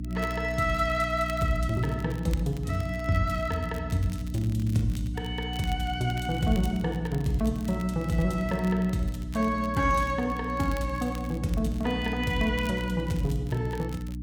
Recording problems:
hum; 60 Hz, harmonics up to 300 Hz, SNR 7 dB
crackle; vinyl, SNR 22 dB

